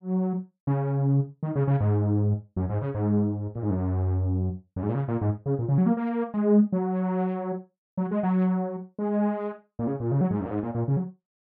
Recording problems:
none

